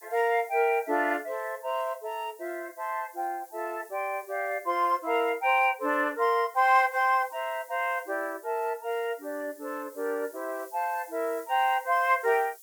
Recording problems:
background hiss; SNR 23 dB

